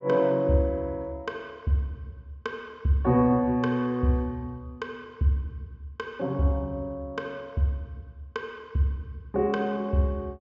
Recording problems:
treble cut off; nothing above 7.7 kHz

